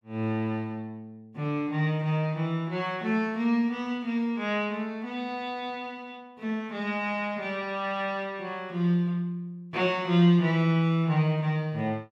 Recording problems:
none

